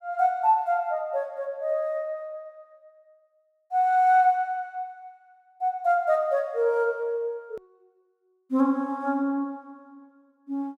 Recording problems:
hard cut with a click; at 7.5 s

